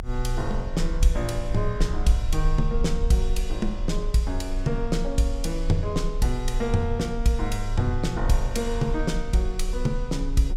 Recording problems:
rumble; below 40 Hz, strongest tone 28 Hz, SNR 5 dB

